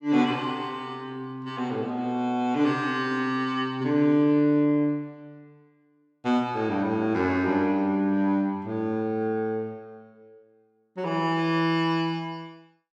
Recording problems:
none

